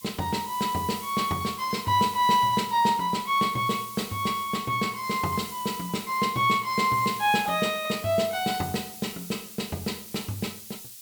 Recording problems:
background hiss; slope +5 dB per octave, SNR 14 dB

